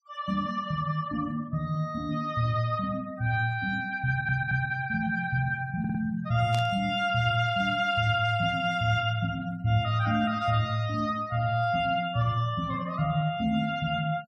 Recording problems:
noise reduction artefacts; signal-to-artefact ratio 25 dB
audio stuttering; at 4 s and at 6 s
static burst; at 6.5 s; peak -8 dB vs average level

